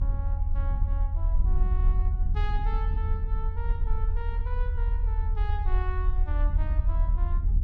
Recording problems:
low-frequency rumble; below 58 Hz, strongest tone 40 Hz, SNR -12 dB
wind noise; below 88 Hz, SNR -3 dB

